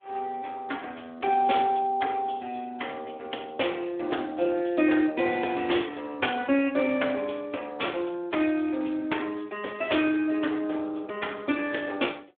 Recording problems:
telephone audio; 240 Hz to 3.5 kHz, Speex

